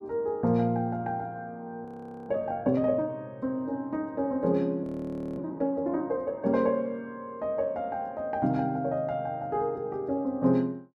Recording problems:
frozen audio; at 2 s and at 5 s for 0.5 s

